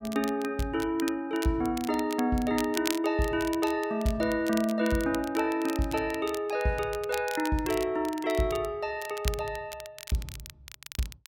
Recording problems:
crackling; vinyl, SNR 13 dB

